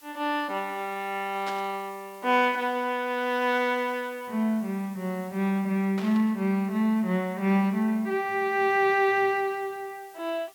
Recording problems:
hiss; slope +1 dB per octave, SNR 26 dB
static burst; at 1.5 s and at 6 s; peak -7 dB vs average level

